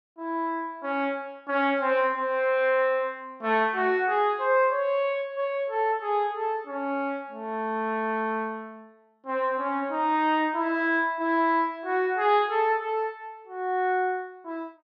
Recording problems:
none

